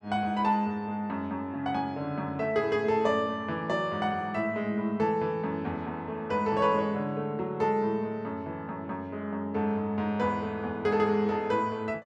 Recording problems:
none

